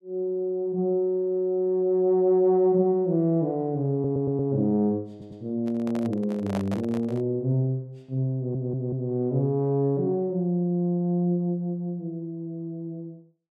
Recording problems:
stutter; at 4 s, at 5 s and at 8.5 s
microphone handling noise; from 5.5 to 7 s; peak -3 dB vs average level

